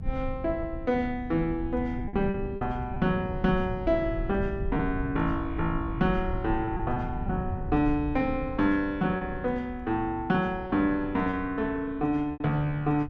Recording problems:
low-frequency rumble; below 120 Hz, SNR 9 dB
packet loss; 5% of the sound replaced, filled with repeated pitch periods

